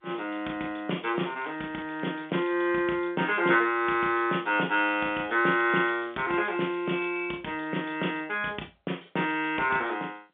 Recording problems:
phone line; 240 Hz to 3.5 kHz, G.711
crackle; from 1 to 2.5 s, at 3 s and from 4.5 to 7.5 s; loose cable, SNR 28 dB

